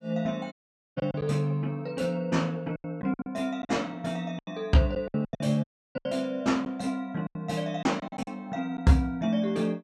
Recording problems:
lost packets; 10% of the sound replaced, filled with silence
dropout; at 0.5 s and at 5.5 s

